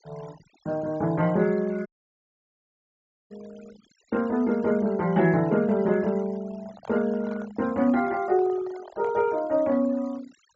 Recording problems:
low-pass filter; nothing above 8 kHz
denoising artefacts; signal-to-artefact ratio 24 dB
audio cutting out; at 2 s for 1.5 s
microphone handling noise; from 6.5 to 9.5 s; peak -12 dB vs average level

